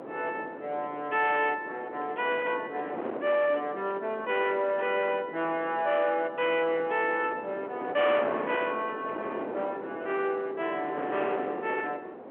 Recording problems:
phone line; 260 Hz to 3.4 kHz, G.711
distorted audio; hard clipping, signal-to-distortion ratio 11 dB
wind on the microphone; below 800 Hz, SNR 9 dB

